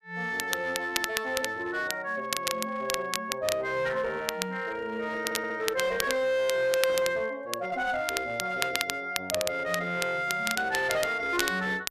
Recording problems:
distorted audio; hard clipping, uneven, signal-to-distortion ratio 9 dB
crackling; vinyl, SNR 5 dB
audio stuttering; at 5 s

